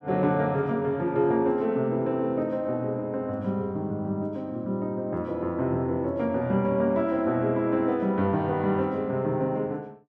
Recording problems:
none

